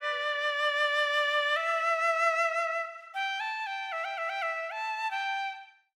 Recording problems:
none

